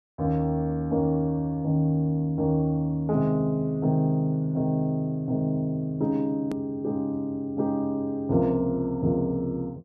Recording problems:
edit click; at 6.5 s

